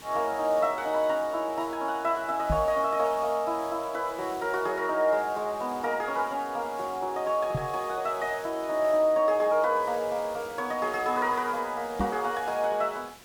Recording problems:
hiss; slope -2 dB per octave, SNR 20 dB
knock on the microphone; at 2.5 s, at 7.5 s and at 12 s; peak +2 dB vs average level

